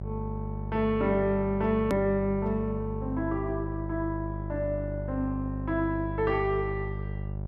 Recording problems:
hum; 50 Hz, harmonics up to 800 Hz, SNR 6 dB
edit click; at 2 s

